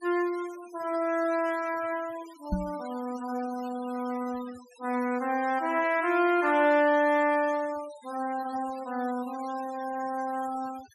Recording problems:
denoising artefacts; signal-to-artefact ratio 19 dB
microphone thump; at 2.5 s; peak +3 dB vs average level

